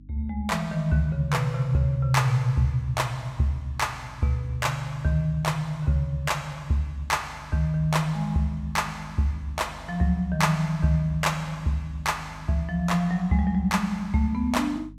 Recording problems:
electrical hum; 50 Hz, harmonics up to 300 Hz, SNR 21 dB

